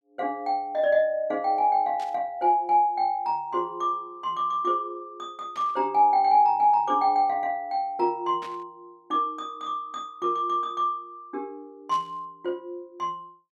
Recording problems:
burst of static; 4 times, first at 2 s; peak -14 dB vs average level

